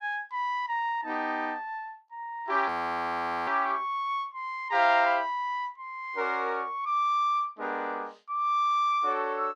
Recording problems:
audio freezing; at 2.5 s for 1 s

